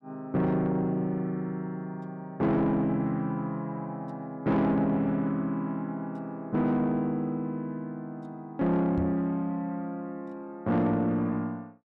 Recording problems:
distortion; soft clipping, signal-to-distortion ratio 11 dB
microphone thump; at 9 s; peak 0 dB vs average level

